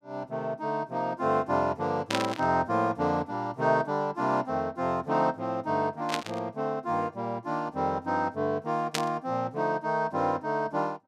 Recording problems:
burst of static; at 2 s, at 6 s and at 9 s; peak +4 dB vs average level

